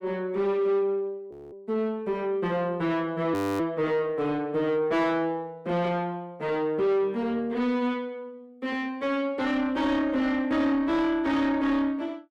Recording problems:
distortion; soft clipping, signal-to-distortion ratio 10 dB
frozen audio; at 1.5 s and at 3.5 s

